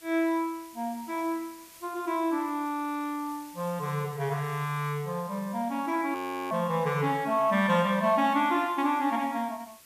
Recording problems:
hiss; SNR 22 dB
frozen audio; at 6 s

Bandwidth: 14.5 kHz